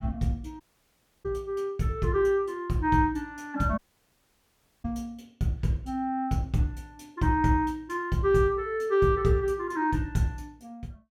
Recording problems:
dropout; at 0.5 s for 0.5 s and at 4 s for 1 s

